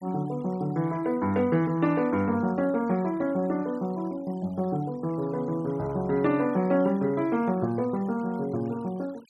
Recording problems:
denoising artefacts; signal-to-artefact ratio 25 dB

